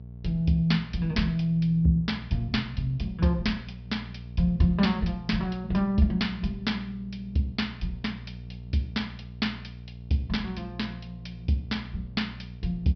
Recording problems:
low-pass filter; nothing above 5.5 kHz
hum; 60 Hz, harmonics up to 480 Hz, SNR 14 dB

